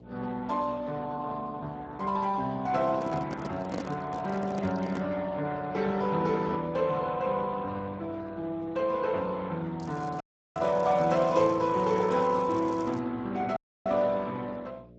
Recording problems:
lossy compression; Speex, log-spectral distance 3 dB, nothing above 7.3 kHz
hum; 60 Hz, harmonics up to 660 Hz, SNR 22 dB
microphone handling noise; from 3 to 5 s; peak -1 dB vs average level
crackle; from 10 to 13 s; loose cable, SNR 26 dB
audio cutting out; at 10 s and at 14 s

